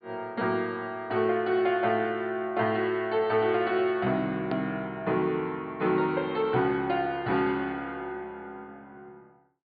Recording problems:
treble cut off; nothing above 4.9 kHz
click at an edit; at 4.5 s

